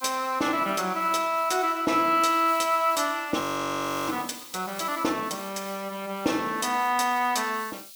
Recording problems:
background hiss; SNR 17 dB
frozen audio; at 3.5 s for 0.5 s

